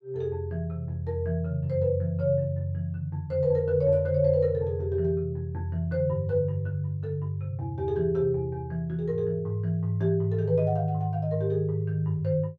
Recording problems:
none

